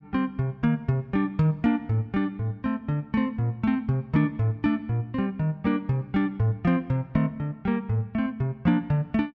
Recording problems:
none

